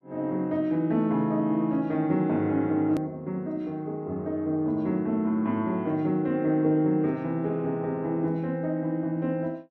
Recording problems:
hard cut with a click; at 3 s

